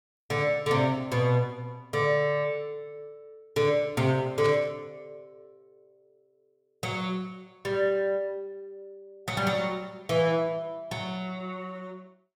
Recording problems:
burst of static; at 4.5 s; peak -5 dB vs average level

